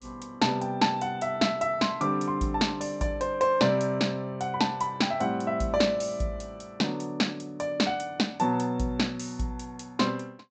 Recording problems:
treble cut off; nothing above 8 kHz

